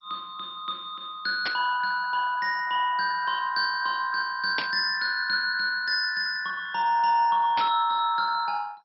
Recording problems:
lossy codec; MP2, log-spectral distance 3 dB, nothing above 4.5 kHz
static burst; at 1.5 s, at 4.5 s and at 7.5 s; peak -1 dB vs average level

